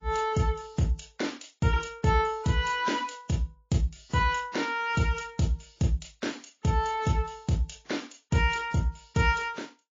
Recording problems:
codec artefacts; MP3, then AAC, log-spectral distance 5 dB

